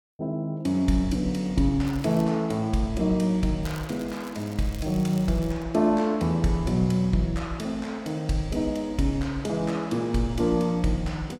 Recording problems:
crackle; at 2 s and from 3.5 to 5.5 s; loose cable, SNR 23 dB

